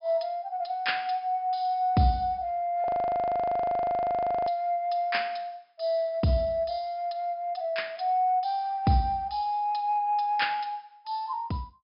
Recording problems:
treble missing; nothing above 5.5 kHz
frozen audio; at 3 s for 1.5 s

